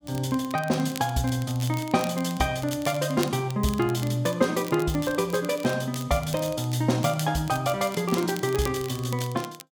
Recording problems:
crackling; vinyl, SNR 16 dB

